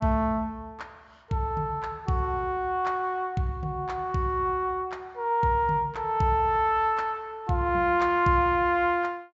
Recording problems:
treble cut off; nothing above 7.6 kHz

